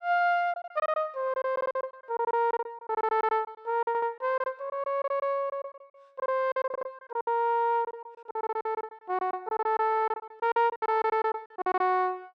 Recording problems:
packet loss; 17% of the sound replaced, filled with silence
stutter; 4 times, first at 1.5 s

